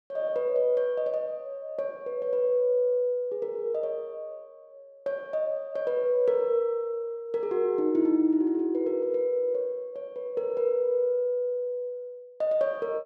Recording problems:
none

